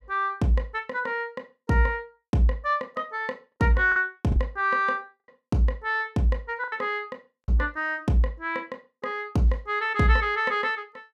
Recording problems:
lost packets; 3% of the sound replaced, filled with the last packet

